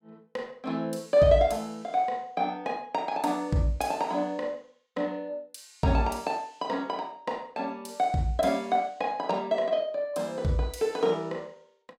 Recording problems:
none

